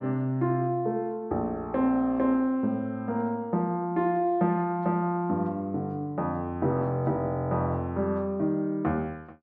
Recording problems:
none

